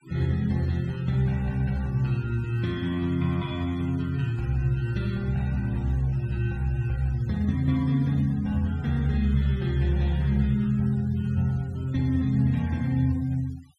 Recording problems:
denoising artefacts; signal-to-artefact ratio 25 dB

